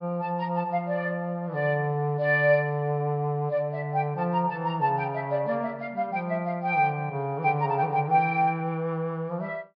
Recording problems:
treble cut off; nothing above 5.5 kHz

